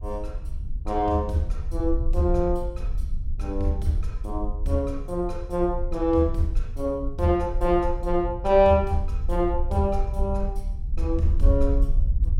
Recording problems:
low-frequency rumble; below 58 Hz, SNR 5 dB

